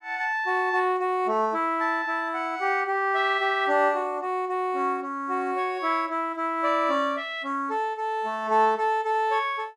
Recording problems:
none

